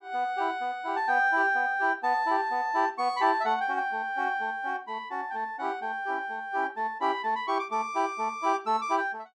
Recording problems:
none

